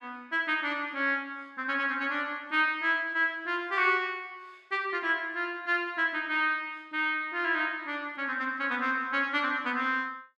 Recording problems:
none

